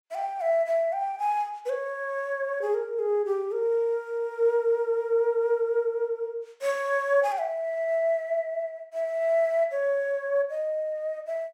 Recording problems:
none

